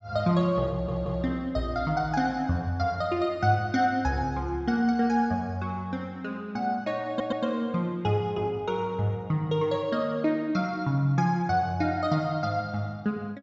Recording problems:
treble cut off; nothing above 8 kHz
audio stuttering; at 0.5 s and at 7 s

